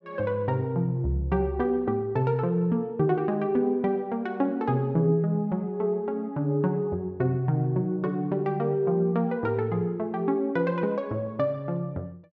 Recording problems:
none

